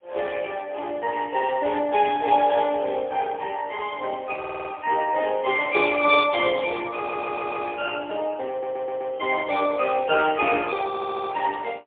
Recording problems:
phone line; 340 Hz to 3.1 kHz, AMR-NB, then MP3
audio stuttering; 4 times, first at 4.5 s

